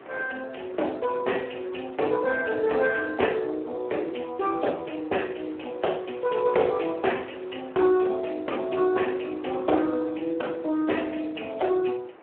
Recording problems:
telephone audio; 280 Hz to 3.1 kHz, Speex
hiss; SNR 21 dB

